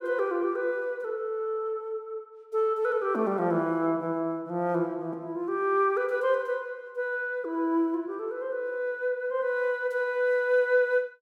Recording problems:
none

